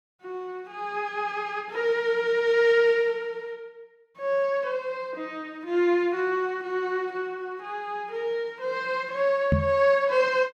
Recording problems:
knock on the microphone; at 9.5 s; peak +6 dB vs average level

